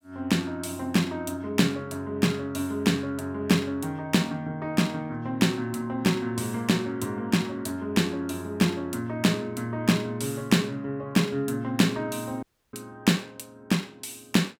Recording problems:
audio cutting out; at 12 s

